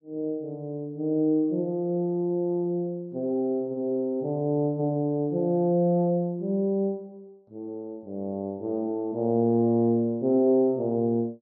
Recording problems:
none

